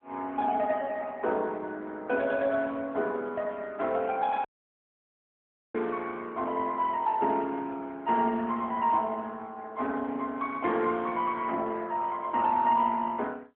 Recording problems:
phone line; 220 Hz to 3.7 kHz, AMR-NB
audio cutting out; at 4.5 s for 1.5 s

